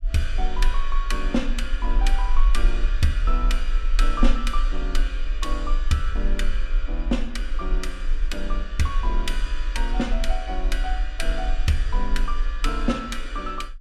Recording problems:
low-frequency rumble; below 38 Hz, strongest tone 24 Hz, SNR -2 dB

